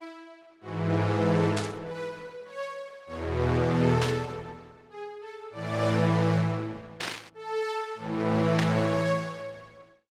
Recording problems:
codec artefacts; Opus, log-spectral distance 4 dB, nothing above 18.9 kHz
static burst; 4 times, first at 1.5 s; peak 0 dB vs average level

